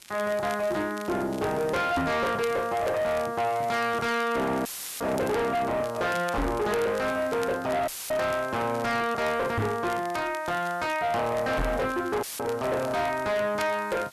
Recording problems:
distortion; soft clipping, signal-to-distortion ratio 7 dB
hiss; slope 0 dB per octave, SNR 24 dB
crackle; vinyl, SNR 20 dB
knock on the microphone; 4 times, first at 2 s; peak +4 dB vs average level
dropout; at 4.5 s, at 8 s and at 12 s; filled with static

